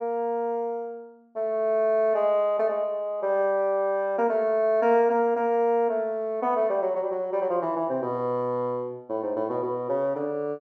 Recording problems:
none

